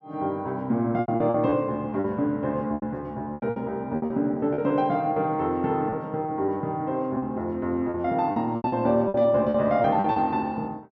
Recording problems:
lost packets; 12% of the sound replaced, filled with repeated pitch periods

